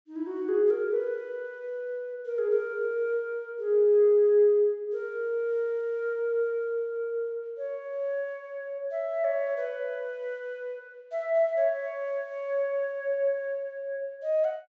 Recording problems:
treble cut off; nothing above 8 kHz

